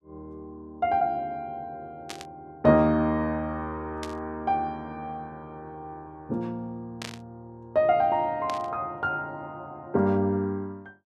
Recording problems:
burst of static; 4 times, first at 2 s; peak -5 dB vs average level

